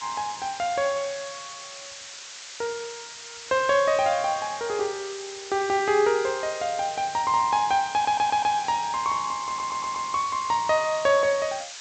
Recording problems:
treble cut off; nothing above 8 kHz
background hiss; slope +4 dB per octave, SNR 13 dB
audio stuttering; at 8 s and at 9.5 s

